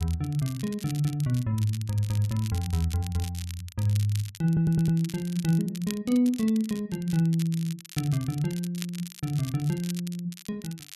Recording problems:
crackle; vinyl, SNR 16 dB
stutter; at 4.5 s

